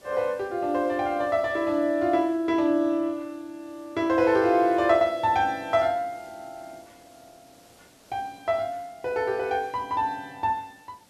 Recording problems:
hiss; SNR 29 dB

